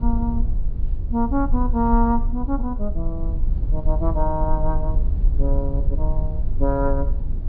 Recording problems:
treble cut off; nothing above 4.8 kHz
rumble; below 52 Hz, SNR 0 dB

